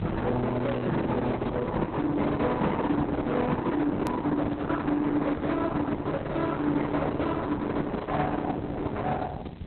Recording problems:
codec artefacts; Opus, log-spectral distance 5 dB, nothing above 13.1 kHz
distorted audio; soft clipping, signal-to-distortion ratio 10 dB
background hiss; SNR 22 dB
rumble; below 370 Hz, SNR 11 dB
click at an edit; at 4 s

